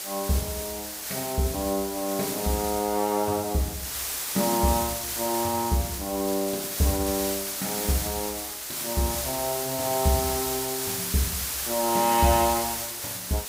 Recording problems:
hiss; slope +1 dB per octave, SNR 2 dB

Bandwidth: 15.5 kHz